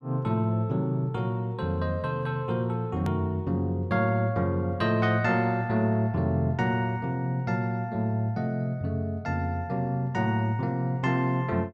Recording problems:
edit click; at 3 s

